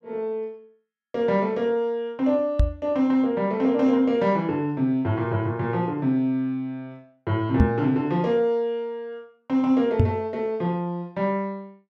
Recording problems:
microphone thump; at 2.5 s, at 7.5 s and at 10 s; peak +9 dB vs average level

